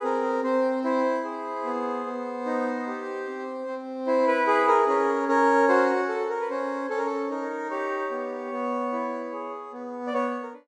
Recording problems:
none

